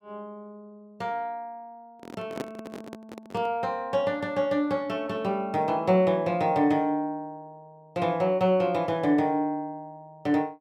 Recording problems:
microphone handling noise; from 2 to 3.5 s; peak -2 dB vs average level

